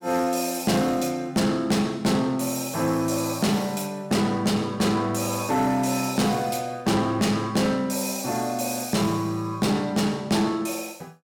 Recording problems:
distortion; soft clipping, signal-to-distortion ratio 12 dB

